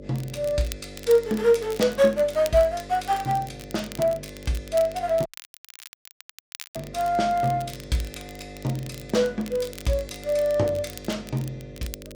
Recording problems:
hum; 50 Hz, harmonics up to 600 Hz, SNR 17 dB
crackling; vinyl, SNR 18 dB
audio cutting out; at 5.5 s for 1.5 s

